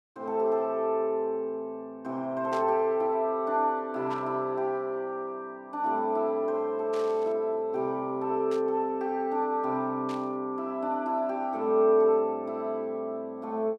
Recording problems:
static burst; 5 times, first at 2.5 s; peak -12 dB vs average level

